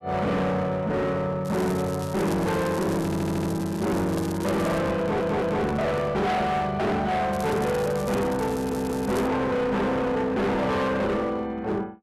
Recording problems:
distortion; hard clipping, uneven, signal-to-distortion ratio 6 dB
crackle; from 1.5 to 5 s and from 7.5 to 9.5 s; loose cable, SNR 18 dB
microphone handling noise; from 2 to 6.5 s; peak -3 dB vs average level
audio stuttering; at 3 s, at 5 s and at 8.5 s

